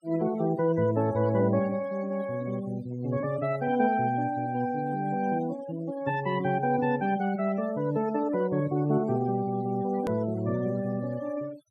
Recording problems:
noise reduction artefacts; signal-to-artefact ratio 18 dB
hard cut with a click; at 10 s

